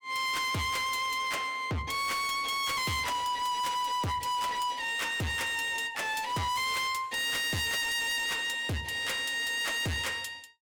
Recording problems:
distortion; hard clipping, signal-to-distortion ratio 6 dB

